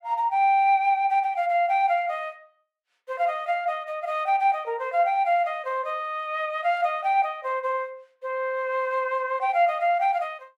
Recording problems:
none

